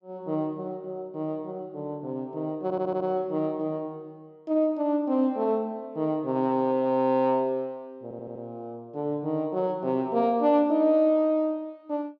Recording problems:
stutter; at 2.5 s and at 8 s

